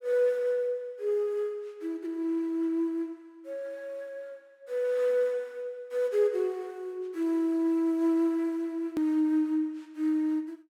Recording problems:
click at an edit; at 9 s

